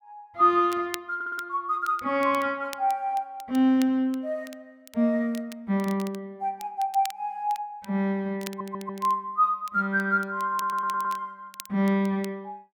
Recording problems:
crackle; vinyl, SNR 20 dB
audio stuttering; at 1 s, at 8.5 s and at 11 s

